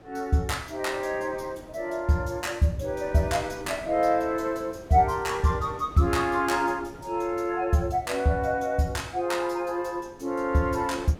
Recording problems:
wind on the microphone; below 570 Hz, SNR 20 dB

